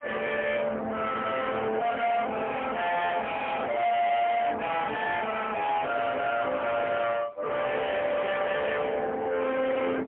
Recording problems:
telephone audio; 300 Hz to 3.5 kHz, AMR-NB, then MP3
distorted audio; soft clipping, signal-to-distortion ratio 6 dB

